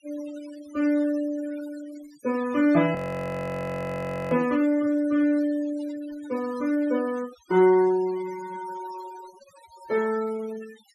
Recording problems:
noise reduction artefacts; signal-to-artefact ratio 18 dB
frozen audio; at 3 s for 1.5 s

